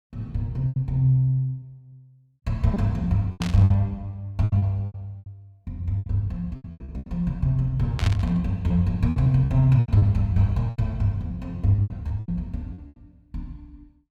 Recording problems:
packet loss; 13% of the sound replaced, filled with repeated pitch periods
burst of static; at 3.5 s and at 8 s; peak -4 dB vs average level

